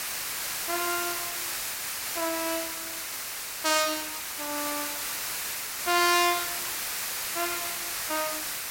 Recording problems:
background hiss; slope +1 dB per octave, SNR 1 dB

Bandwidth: 16.5 kHz